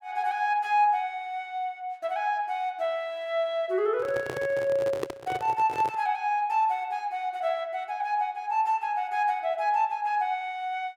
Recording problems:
microphone handling noise; from 4 to 6 s; peak +1 dB vs average level

